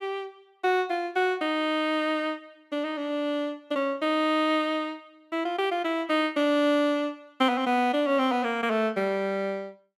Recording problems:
none

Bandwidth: 14.5 kHz